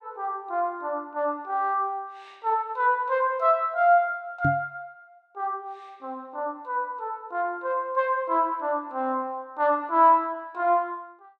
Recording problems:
microphone bump; at 4.5 s; peak +3 dB vs average level

